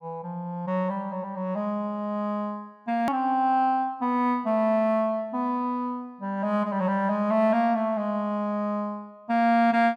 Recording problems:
edit click; at 3 s

